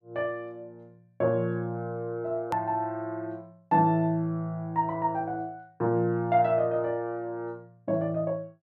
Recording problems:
hard cut with a click; at 2.5 s

